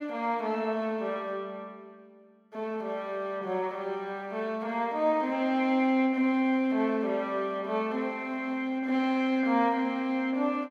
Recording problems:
none

